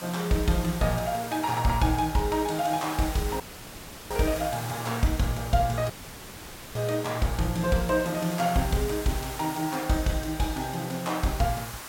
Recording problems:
background hiss; SNR 11 dB
audio cutting out; at 3.5 s for 0.5 s and at 6 s for 1 s

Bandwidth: 16.5 kHz